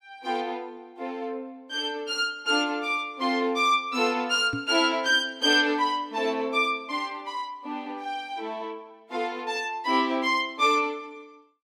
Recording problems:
knock on the microphone; at 4.5 s; peak -3 dB vs average level

